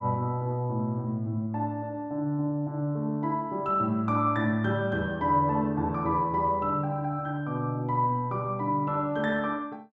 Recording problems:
none

